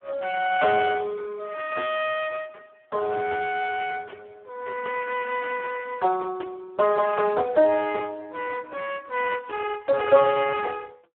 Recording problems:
telephone audio; 320 Hz to 2.9 kHz, Speex

